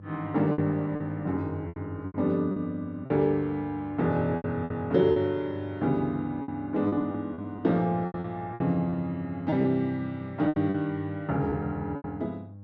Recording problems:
hum; 50 Hz, harmonics up to 600 Hz, SNR 16 dB
lost packets; 10% of the sound replaced, filled with repeated pitch periods

